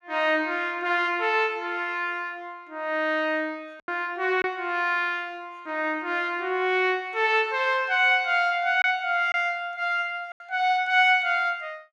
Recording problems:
lost packets; 1.9% of the sound replaced, filled with silence

